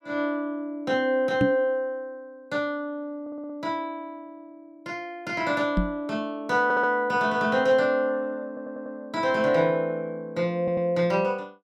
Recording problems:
microphone thump; at 1.5 s and at 6 s; peak +6 dB vs average level
stutter; 4 times, first at 3 s

